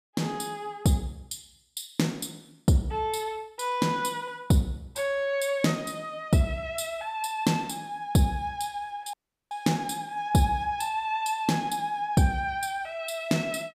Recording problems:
dropout; at 9 s

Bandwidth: 15.5 kHz